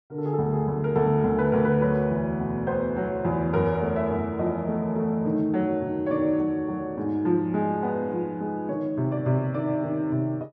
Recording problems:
none

